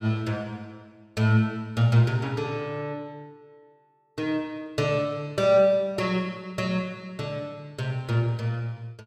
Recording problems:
none

